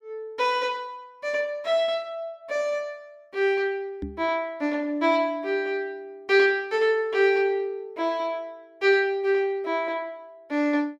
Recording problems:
microphone thump; at 4 s; peak -4 dB vs average level

